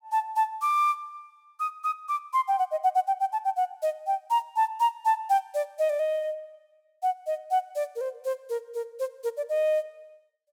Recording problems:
none

